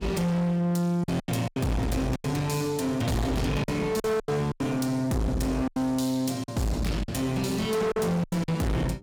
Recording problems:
distortion; hard clipping, uneven, signal-to-distortion ratio 5 dB
electrical hum; 50 Hz, harmonics up to 900 Hz, SNR 26 dB
lost packets; 9% of the sound replaced, filled with silence

